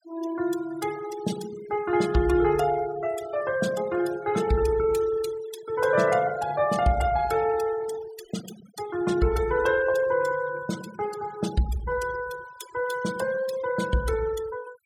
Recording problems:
denoising artefacts; signal-to-artefact ratio 16 dB

